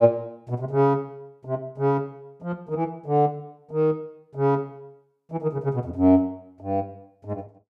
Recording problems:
none

